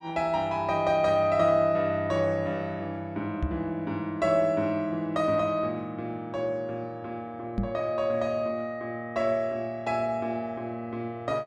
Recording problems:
microphone bump; at 3.5 s and at 7.5 s; peak +3 dB vs average level

